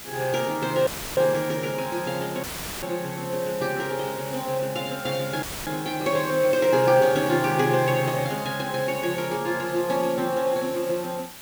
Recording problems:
hiss; slope 0 dB per octave, SNR 13 dB
dropout; at 1 s, at 2.5 s and at 5.5 s; filled with static

